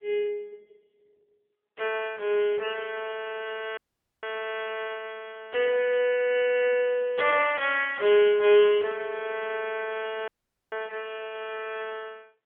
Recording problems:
telephone audio; 320 Hz to 3.3 kHz, AMR-NB
audio cutting out; at 4 s and at 10 s

